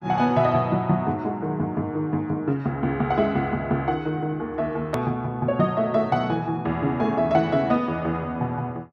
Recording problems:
click at an edit; at 5 s

